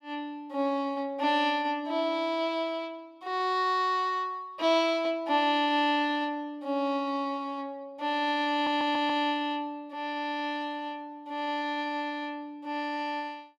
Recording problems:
audio stuttering; at 8.5 s

